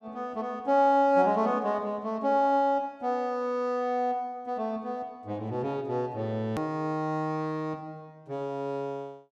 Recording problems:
edit click; at 6.5 s

